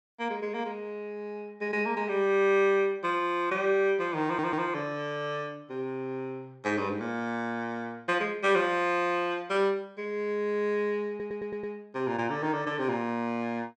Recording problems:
audio stuttering; at 4.5 s and at 11 s

